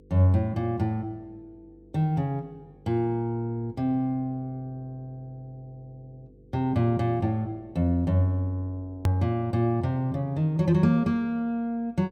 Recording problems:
electrical hum; 50 Hz, harmonics up to 500 Hz, SNR 28 dB
click at an edit; at 9 s

